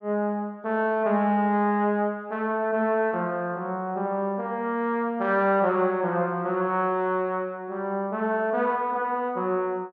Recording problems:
low-pass filter; nothing above 8 kHz

